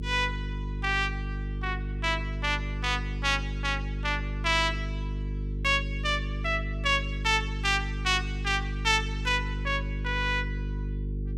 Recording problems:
hum; 50 Hz, harmonics up to 450 Hz, SNR 5 dB

